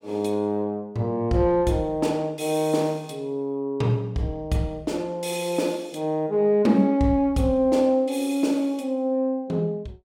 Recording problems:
none

